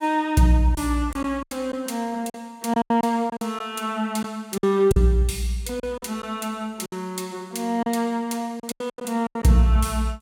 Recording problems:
packet loss; 9% of the sound replaced, filled with silence

